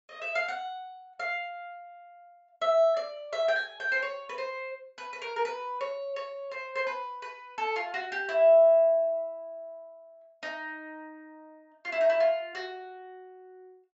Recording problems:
treble missing; nothing above 8 kHz

